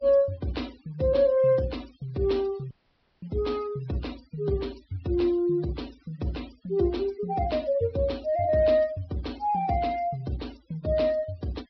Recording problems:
treble missing; nothing above 5.5 kHz
noise reduction artefacts; signal-to-artefact ratio 23 dB
dropout; at 2.5 s for 0.5 s

